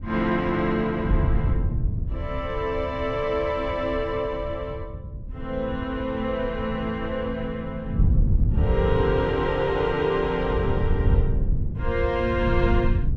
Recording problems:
wind noise; below 110 Hz, SNR 2 dB

